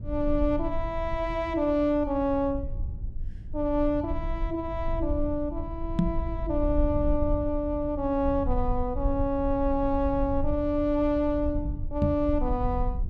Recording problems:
rumble; below 66 Hz, SNR 7 dB
microphone bump; at 6 s and at 12 s; peak +7 dB vs average level

